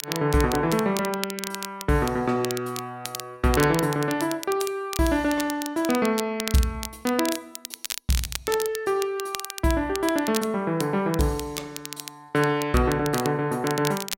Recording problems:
crackle; vinyl, SNR 10 dB

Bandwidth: 16 kHz